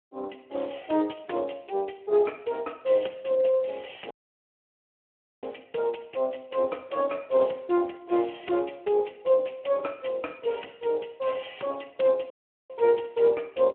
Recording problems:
phone line; 280 Hz to 3.2 kHz, Speex
audio cutting out; at 4 s for 1.5 s and at 12 s

